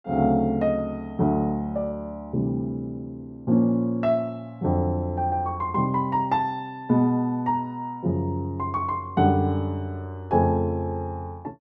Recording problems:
none

